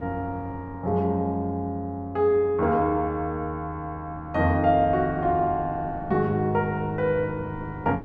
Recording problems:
wind noise; below 350 Hz, SNR 18 dB

